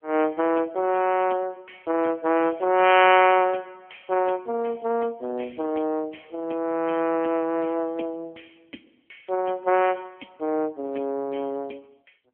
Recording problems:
phone line; 240 Hz to 3.1 kHz, AMR-NB

